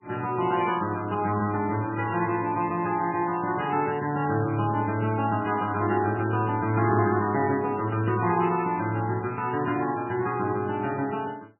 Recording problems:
codec artefacts; MP3, log-spectral distance 4 dB, nothing above 2.7 kHz

